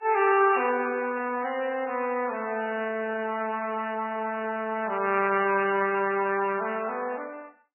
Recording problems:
lossy compression; Vorbis, then MP3, log-spectral distance 4 dB, nothing above 2.4 kHz

